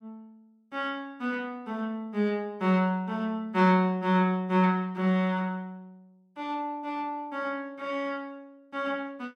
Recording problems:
none

